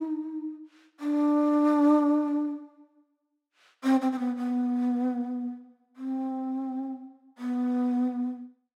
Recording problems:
none

